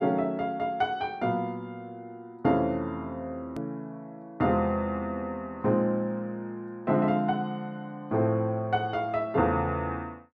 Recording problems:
click at an edit; at 3.5 s

